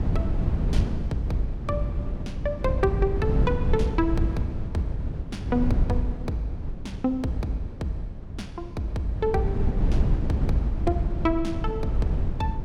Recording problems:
rumble; below 130 Hz, SNR 0 dB

